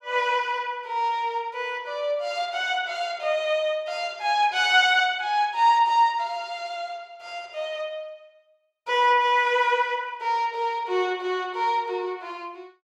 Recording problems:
none

